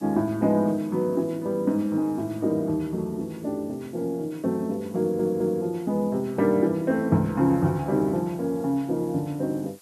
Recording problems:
background hiss; slope 0 dB per octave, SNR 27 dB
stutter; at 5 s

